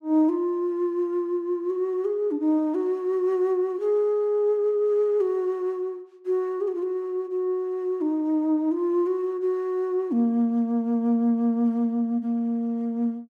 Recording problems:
none

